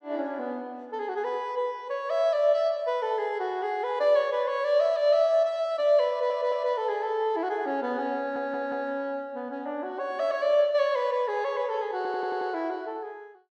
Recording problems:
audio stuttering; at 6 s, at 8 s and at 12 s

